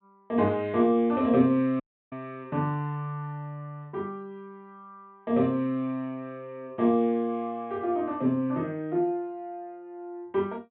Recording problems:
low-pass filter; nothing above 4 kHz
dropout; at 2 s

